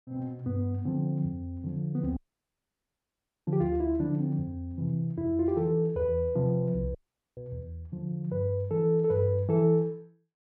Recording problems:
dropout; at 2 s for 1.5 s and at 7 s

